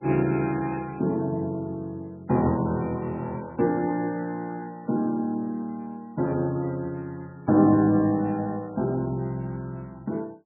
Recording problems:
lossy codec; MP3, log-spectral distance 2 dB, nothing above 2.6 kHz

